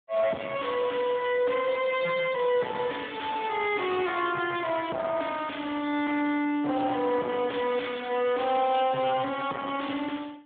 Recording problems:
telephone audio; 240 Hz to 3.5 kHz, Speex
distortion; soft clipping, signal-to-distortion ratio 10 dB

